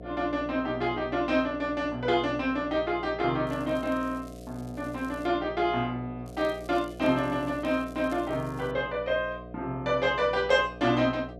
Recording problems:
electrical hum; 60 Hz, harmonics up to 720 Hz, SNR 15 dB
crackling; from 3.5 to 5.5 s and from 6.5 to 8.5 s; loose cable, SNR 27 dB

